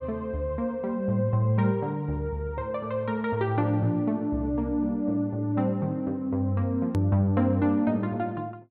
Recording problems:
treble cut off; nothing above 4.4 kHz
hard cut with a click; at 7 s

